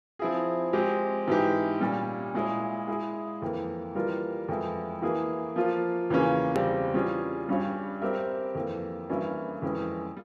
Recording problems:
click at an edit; at 6.5 s

